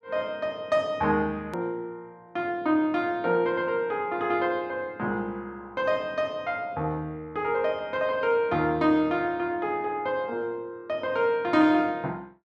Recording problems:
click at an edit; at 1.5 s

